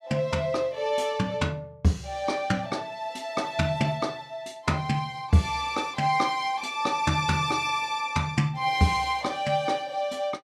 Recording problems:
none

